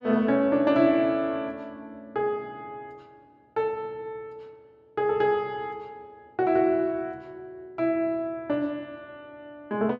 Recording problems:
none

